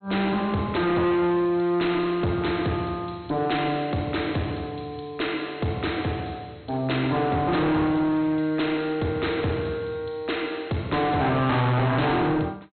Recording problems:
low-pass filter; nothing above 4.1 kHz
distorted audio; hard clipping, uneven, signal-to-distortion ratio 6 dB

